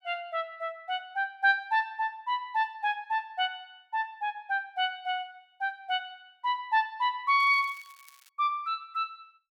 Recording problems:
crackle; at 7.5 s; loose cable, SNR 26 dB

